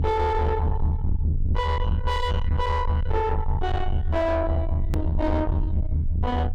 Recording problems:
distorted audio; soft clipping, signal-to-distortion ratio 8 dB
rumble; below 86 Hz, SNR -1 dB
hard cut with a click; at 5 s

